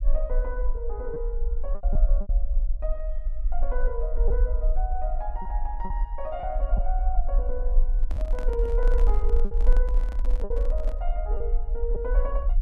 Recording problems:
rumble; below 44 Hz, strongest tone 24 Hz, SNR -7 dB
packet loss; 4% of the sound replaced, filled with repeated pitch periods
microphone handling noise; from 8 to 11 s; peak -2 dB vs average level

